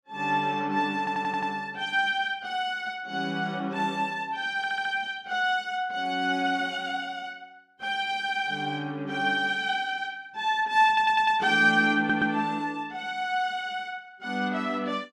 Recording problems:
stutter; 4 times, first at 1 s

